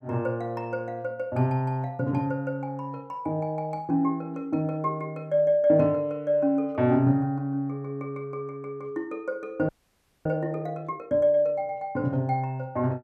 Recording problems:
audio freezing; at 9.5 s for 0.5 s

